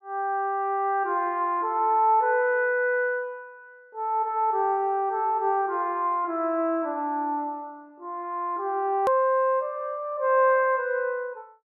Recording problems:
click at an edit; at 9 s

